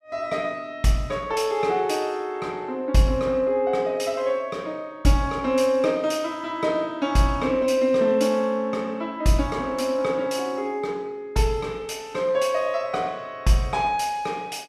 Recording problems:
none

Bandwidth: 14.5 kHz